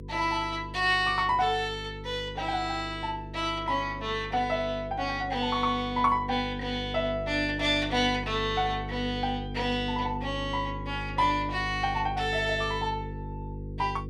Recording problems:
hum; 50 Hz, harmonics up to 500 Hz, SNR 11 dB

